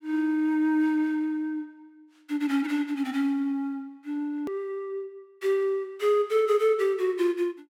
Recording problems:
hard cut with a click; at 4.5 s

